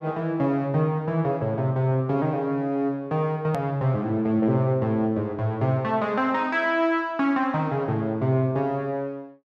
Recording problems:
hard cut with a click; at 3.5 s

